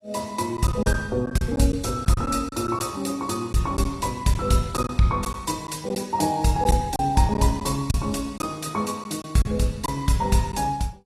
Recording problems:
codec artefacts; AAC, log-spectral distance 3 dB, nothing above 13.8 kHz
lost packets; 6% of the sound replaced, filled with silence

